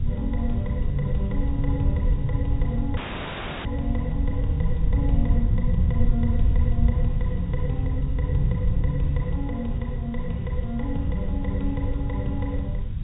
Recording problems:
treble cut off; nothing above 4 kHz
hiss; SNR 26 dB
rumble; below 68 Hz, SNR 14 dB
wind on the microphone; below 100 Hz, SNR -3 dB
audio cutting out; at 3 s for 0.5 s

